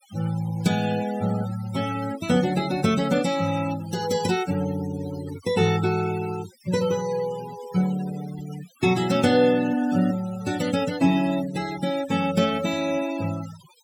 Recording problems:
denoising artefacts; signal-to-artefact ratio 15 dB

